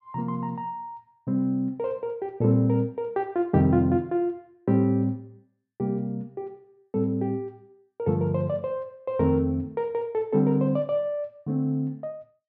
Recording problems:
none

